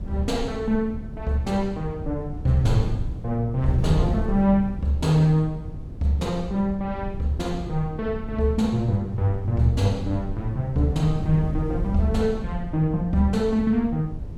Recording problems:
wind noise; below 120 Hz, SNR 8 dB

